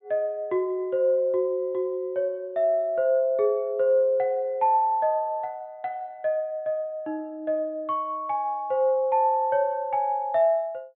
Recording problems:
treble missing; nothing above 4 kHz

